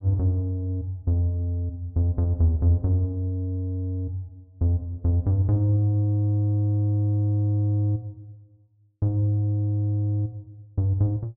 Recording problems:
treble missing; nothing above 4 kHz

